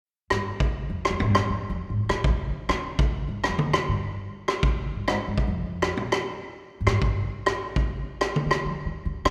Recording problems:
none

